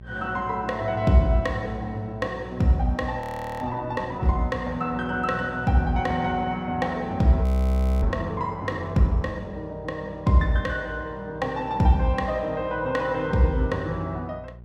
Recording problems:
hum; 60 Hz, harmonics up to 600 Hz, SNR 19 dB
frozen audio; at 3 s and at 7.5 s for 0.5 s

